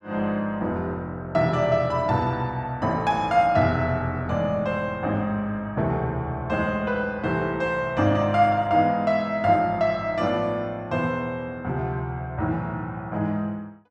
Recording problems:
none

